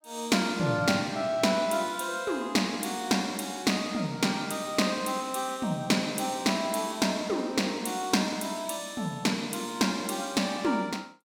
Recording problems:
none

